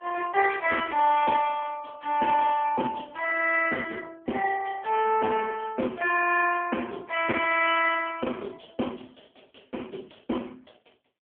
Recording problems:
phone line; 280 Hz to 3.2 kHz, AMR-NB

